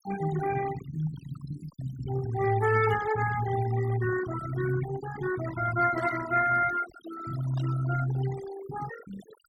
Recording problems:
denoising artefacts; signal-to-artefact ratio 12 dB
burst of static; at 3 s, at 6 s and at 7.5 s; peak -17 dB vs average level

